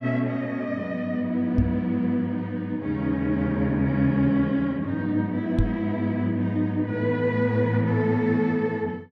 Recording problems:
microphone bump; at 1.5 s and at 5.5 s; peak +6 dB vs average level

